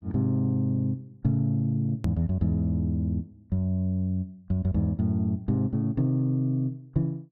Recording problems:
click at an edit; at 2 s

